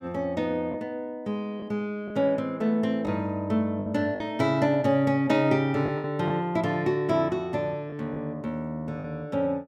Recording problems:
lost packets; 4% of the sound replaced, filled with the last packet

